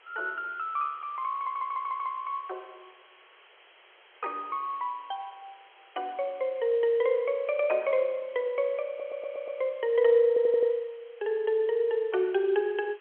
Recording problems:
phone line; 320 Hz to 3.3 kHz, G.711
hiss; SNR 27 dB
stutter; at 1.5 s, at 9 s and at 10 s

